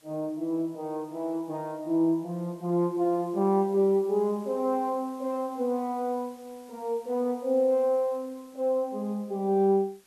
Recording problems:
background hiss; slope -1 dB per octave, SNR 29 dB

